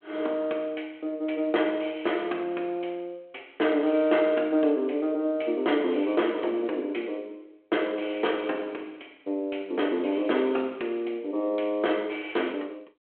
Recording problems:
phone line; 240 Hz to 3.3 kHz, G.726

